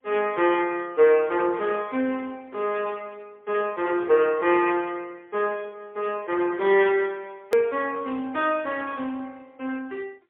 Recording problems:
telephone audio; 300 Hz to 3.4 kHz, AMR-NB, then MP3
hard cut with a click; at 7.5 s

